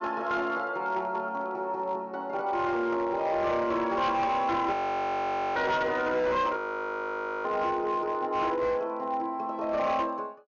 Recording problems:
treble missing; nothing above 6.8 kHz
distortion; hard clipping, signal-to-distortion ratio 11 dB
audio freezing; at 4.5 s for 1 s and at 6.5 s for 1 s

